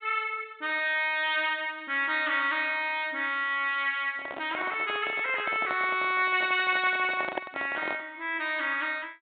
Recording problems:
treble cut off; nothing above 4 kHz
microphone handling noise; from 4 to 8 s; peak -1 dB vs average level

